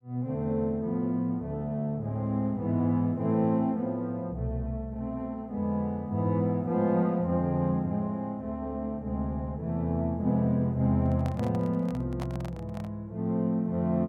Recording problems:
handling noise; from 11 to 13 s; peak -5 dB vs average level

